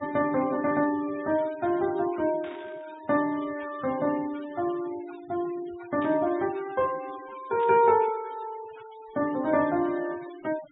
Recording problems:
low-pass filter; nothing above 4 kHz
noise reduction artefacts; signal-to-artefact ratio 20 dB
static burst; at 2.5 s, at 6 s and at 7.5 s; peak -15 dB vs average level

